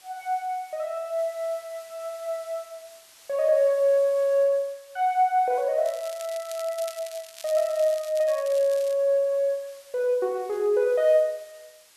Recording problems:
hiss; slope +2 dB per octave, SNR 26 dB
crackling; from 6 to 9 s; loose cable, SNR 18 dB

